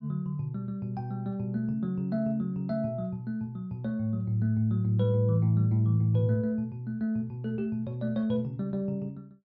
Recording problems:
low-pass filter; nothing above 6.6 kHz

